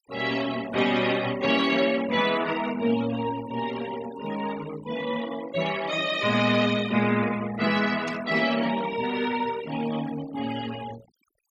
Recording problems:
noise reduction artefacts; signal-to-artefact ratio 15 dB
burst of static; at 8 s; peak -8 dB vs average level

